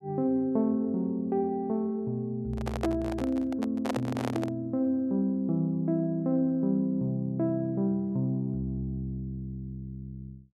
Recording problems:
microphone handling noise; from 2.5 to 4.5 s; peak +1 dB vs average level

